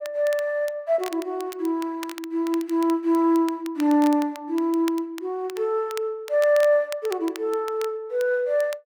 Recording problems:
crackling; vinyl, SNR 19 dB

